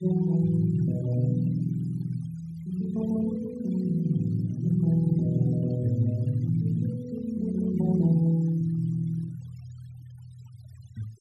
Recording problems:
noise reduction artefacts; signal-to-artefact ratio 26 dB

